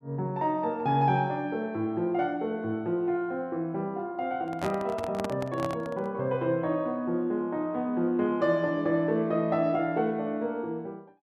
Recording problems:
handling noise; from 4.5 to 6 s; peak -1 dB vs average level

